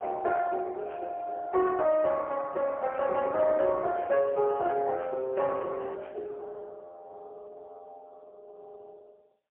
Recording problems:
telephone audio; 320 Hz to 3.4 kHz, AMR-NB, then MP3

